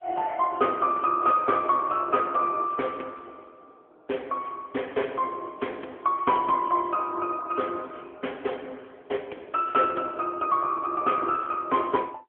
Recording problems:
phone line; 260 Hz to 3.3 kHz, AMR-NB

